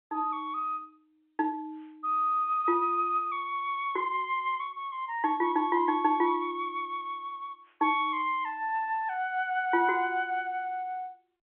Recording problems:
telephone audio; 240 Hz to 3.7 kHz, G.711

